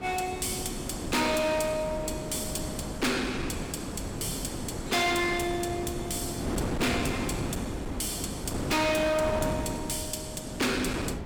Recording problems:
distorted audio; hard clipping, uneven, signal-to-distortion ratio 6 dB
wind on the microphone; below 550 Hz, SNR 5 dB

